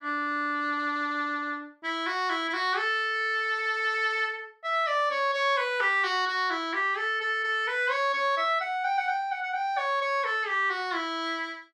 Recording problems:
none

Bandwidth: 13 kHz